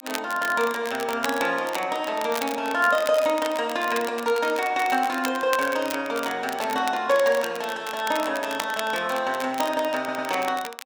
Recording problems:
crackle; vinyl, SNR 12 dB
stutter; at 10 s

